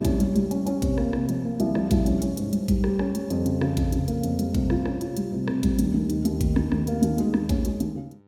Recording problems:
mains hum; 50 Hz, harmonics up to 1.4 kHz, SNR 29 dB

